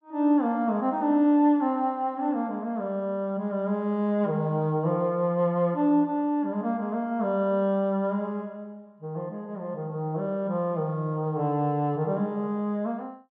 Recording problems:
none

